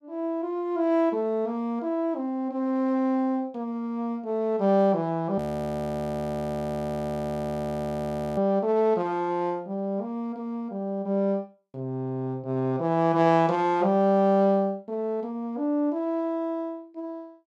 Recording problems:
audio freezing; at 5.5 s for 3 s

